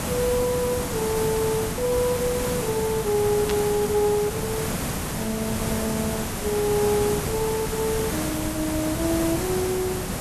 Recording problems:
background hiss; slope -4 dB per octave, SNR 2 dB
static burst; at 3.5 s; peak -1 dB vs average level

